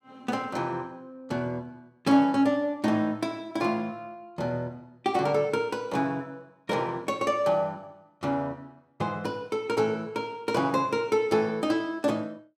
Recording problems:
none

